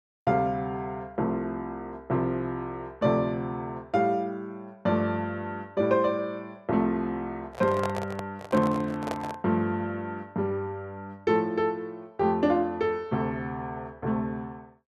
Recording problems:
handling noise; from 7.5 to 9.5 s; peak 0 dB vs average level

